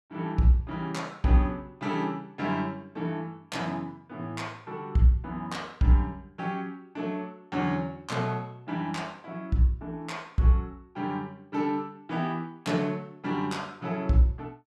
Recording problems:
none

